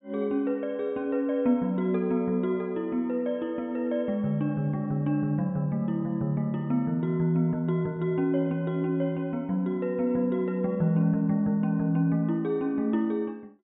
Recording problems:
treble missing; nothing above 3.8 kHz

